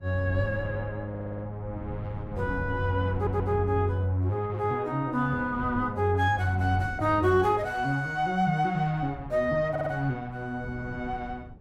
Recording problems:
wind noise; below 180 Hz, SNR 13 dB
stutter; at 1 s, at 3 s and at 9.5 s

